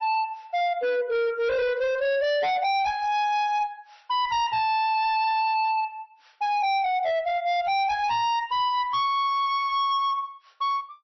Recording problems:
lossy codec; MP3, log-spectral distance 2 dB, nothing above 5.5 kHz
distortion; hard clipping, signal-to-distortion ratio 6 dB

